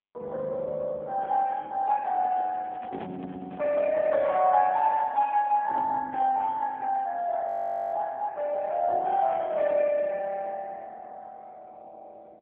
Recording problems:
phone line; 390 Hz to 3.4 kHz, AMR-NB
handling noise; from 2 to 4 s; peak -10 dB vs average level
frozen audio; at 7.5 s

